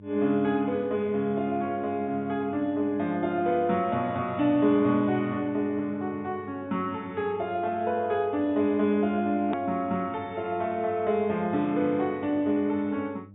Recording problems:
low-pass filter; nothing above 4 kHz
mains hum; 50 Hz, harmonics up to 600 Hz, SNR 21 dB
click at an edit; at 9.5 s

